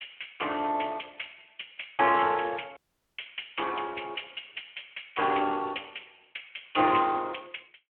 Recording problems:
telephone audio; 220 Hz to 3.2 kHz, Speex
audio cutting out; at 3 s

